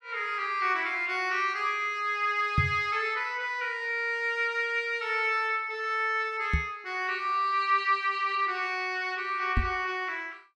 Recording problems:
knock on the microphone; at 2.5 s, at 6.5 s and at 9.5 s; peak +5 dB vs average level

